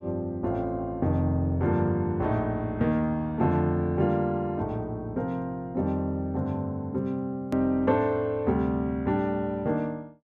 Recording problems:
hard cut with a click; at 7.5 s

